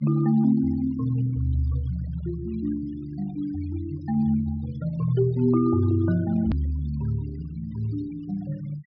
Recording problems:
treble missing; nothing above 5.5 kHz
noise reduction artefacts; signal-to-artefact ratio 23 dB
hard cut with a click; at 6.5 s

